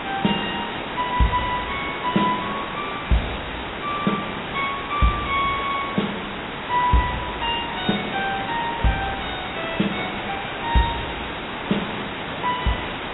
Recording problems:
lossy compression; AAC, log-spectral distance 17 dB, nothing above 3.4 kHz
background hiss; SNR 4 dB

